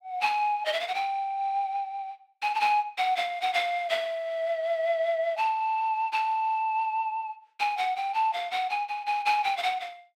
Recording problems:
none

